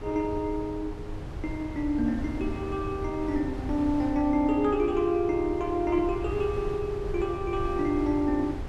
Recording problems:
wind noise; below 180 Hz, SNR 10 dB

